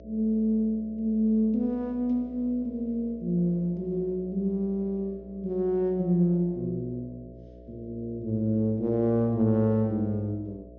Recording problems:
treble cut off; nothing above 6.5 kHz
electrical hum; 60 Hz, harmonics up to 660 Hz, SNR 21 dB

